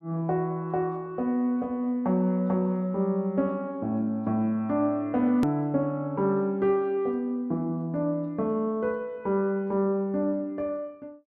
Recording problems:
click at an edit; at 5.5 s

